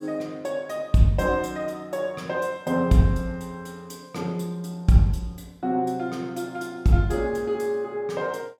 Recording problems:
none

